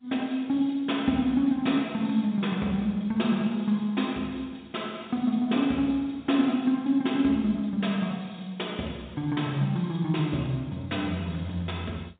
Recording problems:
phone line; 150 Hz to 3.7 kHz, G.711

